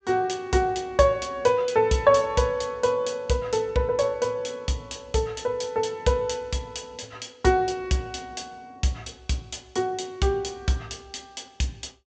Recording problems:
treble missing; nothing above 8 kHz

